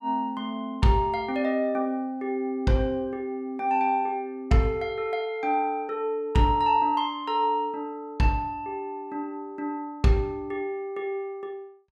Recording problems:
none

